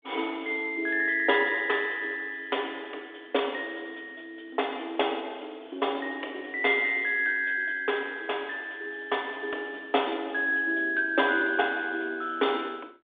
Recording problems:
telephone audio; 280 Hz to 3.6 kHz, G.726

